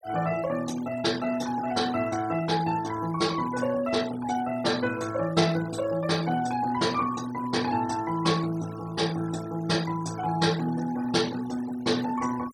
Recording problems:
denoising artefacts; signal-to-artefact ratio 16 dB

